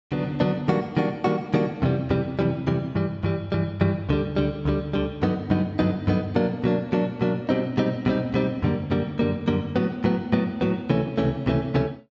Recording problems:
treble missing; nothing above 8 kHz

